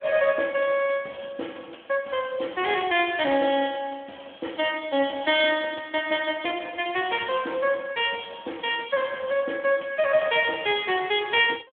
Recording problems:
phone line; 220 Hz to 3.4 kHz, Speex

